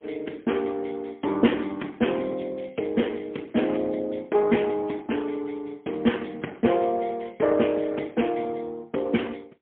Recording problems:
phone line; 190 Hz to 3.3 kHz, AMR-NB, then MP3

